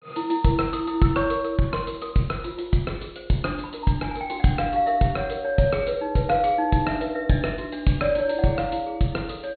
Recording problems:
treble cut off; nothing above 4.4 kHz

